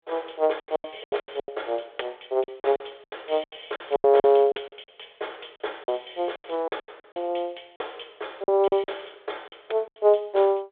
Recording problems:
phone line; 340 Hz to 3.6 kHz, G.726
packet loss; 15% of the sound replaced, filled with silence

